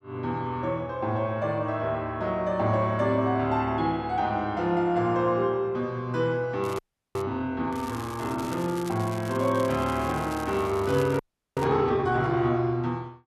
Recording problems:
crackle; at 6.5 s and from 7.5 to 12 s; loose cable, SNR 19 dB
frozen audio; at 7 s and at 11 s

